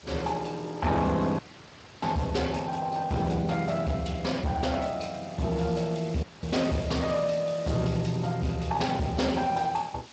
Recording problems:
codec artefacts; Speex, log-spectral distance 10 dB, nothing above 7.6 kHz
distorted audio; soft clipping, signal-to-distortion ratio 10 dB
background hiss; slope -1 dB per octave, SNR 20 dB
dropout; at 1.5 s for 0.5 s and at 6 s

